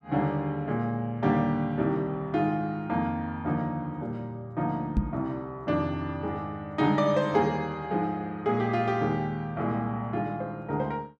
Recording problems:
microphone thump; at 5 s; peak +7 dB vs average level

